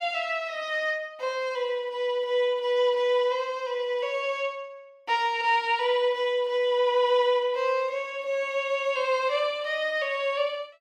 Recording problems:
none

